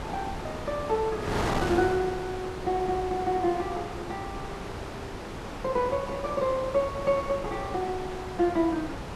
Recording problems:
wind noise; below 1.2 kHz, SNR 6 dB

